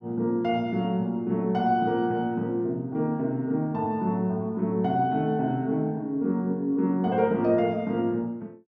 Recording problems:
none

